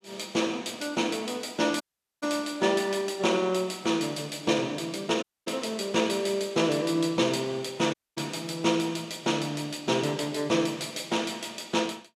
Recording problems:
dropout; at 2 s, at 5 s and at 8 s

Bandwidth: 14.5 kHz